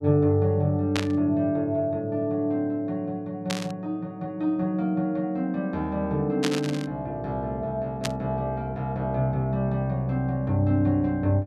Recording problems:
static burst; 4 times, first at 1 s; peak +2 dB vs average level

